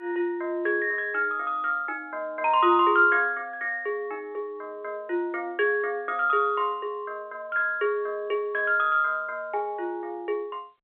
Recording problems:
phone line; 320 Hz to 3.4 kHz, G.711

